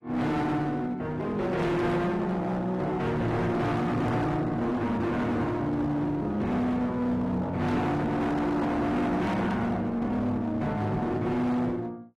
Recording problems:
lossy compression; AAC, log-spectral distance 2 dB, nothing above 13.1 kHz
distorted audio; hard clipping, uneven, signal-to-distortion ratio 6 dB

